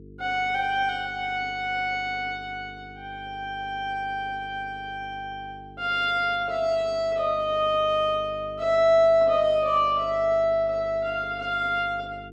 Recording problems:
hum; 50 Hz, harmonics up to 450 Hz, SNR 21 dB

